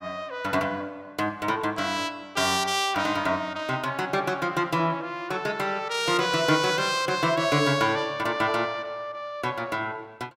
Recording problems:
none

